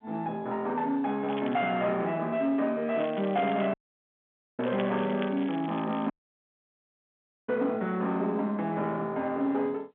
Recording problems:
phone line; 150 Hz to 3.5 kHz, G.711
distorted audio; soft clipping, signal-to-distortion ratio 11 dB
crackle; at 1.5 s, at 3 s and from 4.5 to 6 s; loose cable, SNR 18 dB
dropout; at 3.5 s for 1 s and at 6 s for 1.5 s

